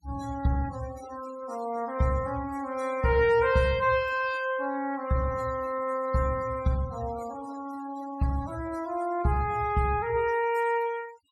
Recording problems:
noise reduction artefacts; signal-to-artefact ratio 18 dB

